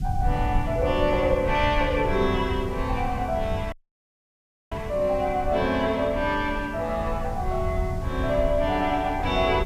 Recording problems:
hiss; slope +2 dB per octave, SNR 27 dB
low-frequency rumble; below 100 Hz, SNR 8 dB
dropout; at 3.5 s for 1 s

